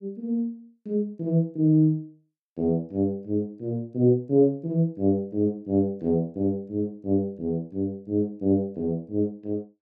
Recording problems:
none

